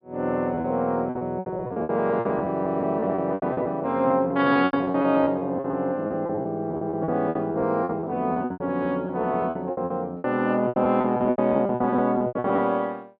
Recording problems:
treble missing; nothing above 5 kHz
lost packets; 20% of the sound replaced, filled with repeated pitch periods

